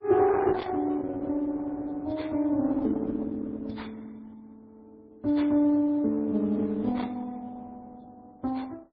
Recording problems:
codec artefacts; Opus, then MP3, log-spectral distance 2 dB, nothing above 4.9 kHz

